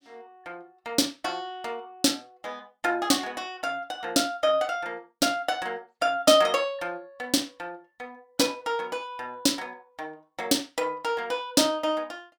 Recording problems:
none

